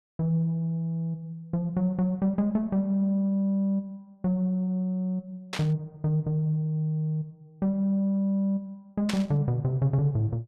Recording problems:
static burst; at 5.5 s and at 9 s; peak -1 dB vs average level

